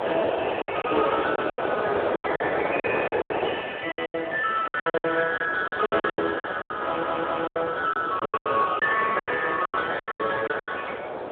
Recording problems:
phone line; 300 Hz to 3 kHz, Speex
wind on the microphone; below 890 Hz, SNR 3 dB
lost packets; 18% of the sound replaced, filled with silence
audio stuttering; at 7 s

